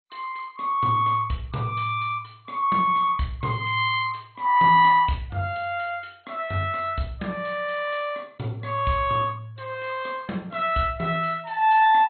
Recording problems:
codec artefacts; MP2, log-spectral distance 4 dB, nothing above 3.6 kHz

